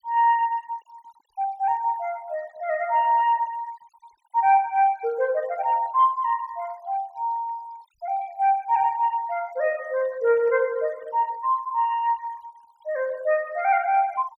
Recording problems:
denoising artefacts; signal-to-artefact ratio 25 dB

